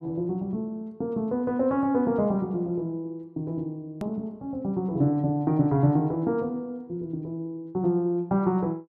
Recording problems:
edit click; at 4 s

